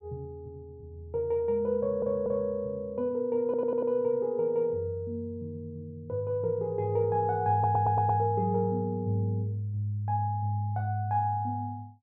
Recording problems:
stutter; at 2 s, at 3.5 s and at 7.5 s

